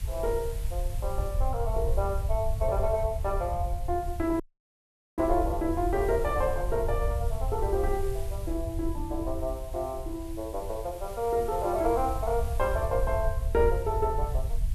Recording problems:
hiss; slope -1 dB per octave, SNR 19 dB
low-frequency rumble; below 76 Hz, SNR 4 dB
audio cutting out; at 4.5 s for 1 s

